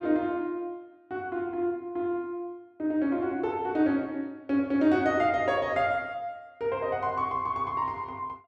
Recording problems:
none

